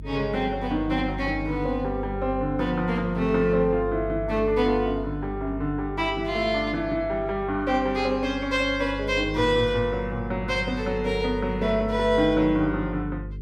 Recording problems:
hum; 50 Hz, harmonics up to 450 Hz, SNR 11 dB

